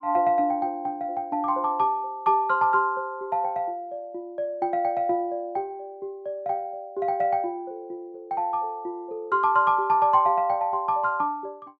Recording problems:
none

